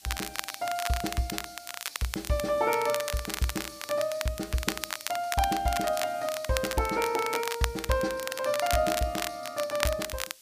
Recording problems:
background hiss; SNR 19 dB
crackling; vinyl, SNR 5 dB

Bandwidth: 15 kHz